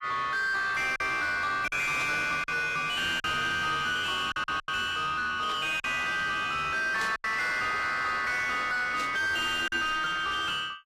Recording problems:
lossy compression; AAC, log-spectral distance 3 dB, nothing above 15.1 kHz
distorted audio; soft clipping, signal-to-distortion ratio 7 dB
lost packets; 4% of the sound replaced, filled with silence
burst of static; 4 times, first at 2 s; peak -7 dB vs average level

